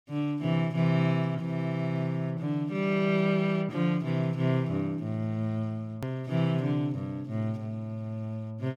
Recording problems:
edit click; at 6 s

